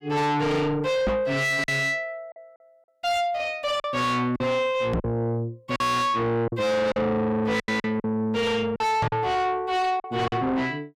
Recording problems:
distortion; soft clipping, signal-to-distortion ratio 6 dB
lost packets; 6% of the sound replaced, filled with silence
microphone bump; at 1 s, at 5 s and at 9 s; peak +5 dB vs average level

